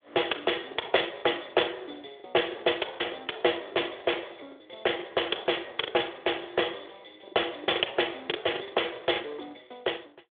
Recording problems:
telephone audio; 300 Hz to 3.5 kHz, Speex
packet loss; 8% of the sound replaced, filled with the last packet

